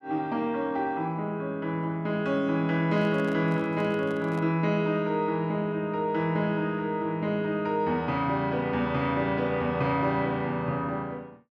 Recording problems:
microphone handling noise; from 3 to 4.5 s; peak -11 dB vs average level

